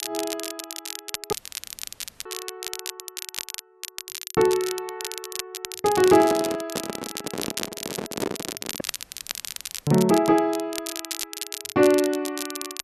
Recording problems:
crackling; vinyl, SNR 10 dB
audio cutting out; at 1.5 s for 1 s and at 9 s for 1 s
handling noise; from 6 to 9 s; peak 0 dB vs average level

